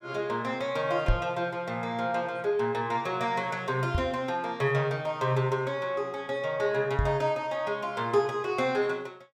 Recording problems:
knock on the microphone; at 1 s, at 4 s and at 7 s; peak +6 dB vs average level

